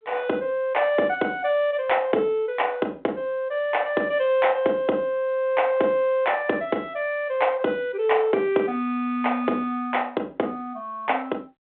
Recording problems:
phone line; 260 Hz to 3.7 kHz, G.726

